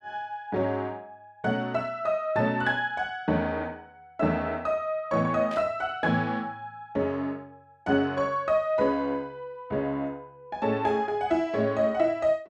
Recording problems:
static burst; at 5.5 s; peak -11 dB vs average level

